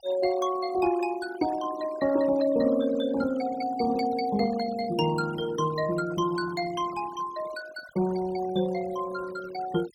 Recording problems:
denoising artefacts; signal-to-artefact ratio 17 dB

